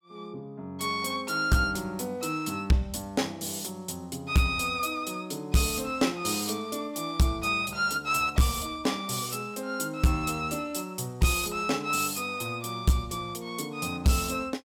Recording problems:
distorted audio; hard clipping, signal-to-distortion ratio 12 dB

